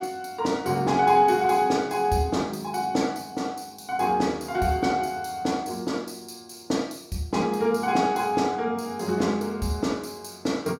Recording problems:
none

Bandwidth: 16.5 kHz